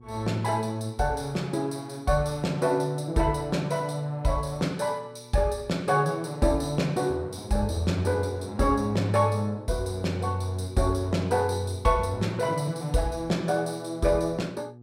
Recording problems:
hum; 60 Hz, harmonics up to 840 Hz, SNR 22 dB

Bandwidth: 16 kHz